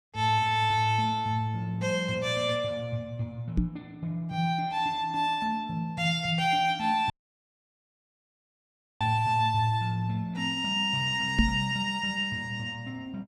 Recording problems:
microphone bump; at 3.5 s and at 11 s; peak +7 dB vs average level
audio cutting out; at 7 s for 2 s

